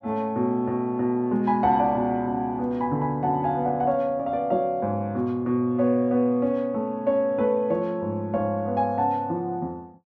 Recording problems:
none

